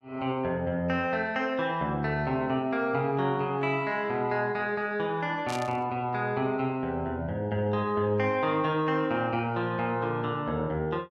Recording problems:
burst of static; at 5.5 s; peak -6 dB vs average level

